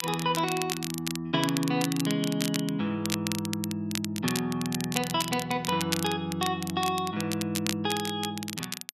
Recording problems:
crackle; vinyl, SNR 6 dB

